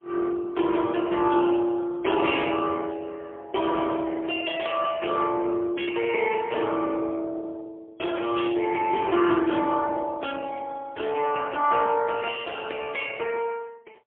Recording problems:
telephone audio; 280 Hz to 3.3 kHz, AMR-NB, then MP3

